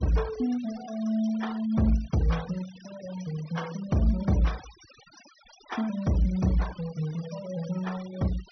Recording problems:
low-pass filter; nothing above 6 kHz
noise reduction artefacts; signal-to-artefact ratio 18 dB

